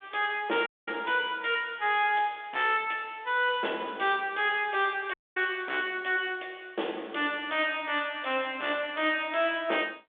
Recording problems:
telephone audio; 240 Hz to 3.6 kHz, G.726
distortion; hard clipping, signal-to-distortion ratio 11 dB
dropout; at 0.5 s and at 5 s

